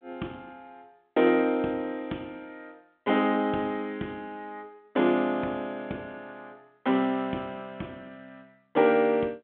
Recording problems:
phone line; 170 Hz to 3.6 kHz, G.726

